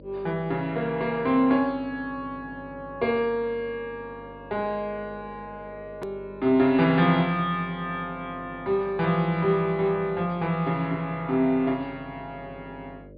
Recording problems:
treble missing; nothing above 4.7 kHz
hum; 50 Hz, harmonics up to 600 Hz, SNR 21 dB
edit click; at 6 s

